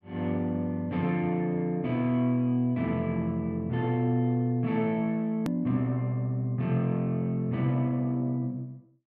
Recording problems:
click at an edit; at 5.5 s

